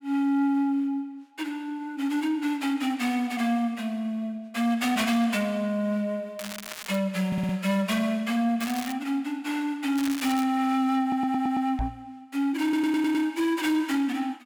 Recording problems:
distorted audio; soft clipping, signal-to-distortion ratio 10 dB
crackling; at 6.5 s, at 8.5 s and at 10 s; loose cable, SNR 12 dB
audio stuttering; at 7.5 s, at 11 s and at 13 s
microphone bump; at 12 s; peak -1 dB vs average level

